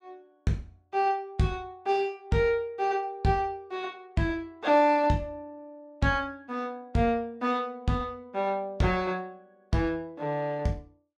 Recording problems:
none

